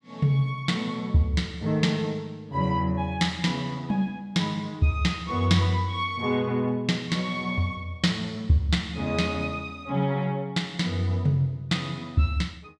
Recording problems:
none

